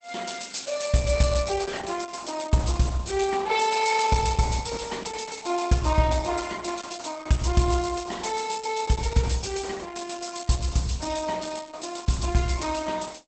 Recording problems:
lossy compression; Opus, log-spectral distance 9 dB, nothing above 8.2 kHz

